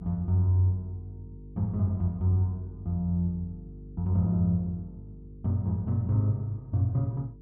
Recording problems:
hum; 50 Hz, harmonics up to 450 Hz, SNR 18 dB

